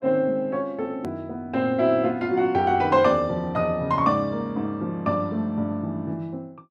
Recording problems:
hard cut with a click; at 1 s

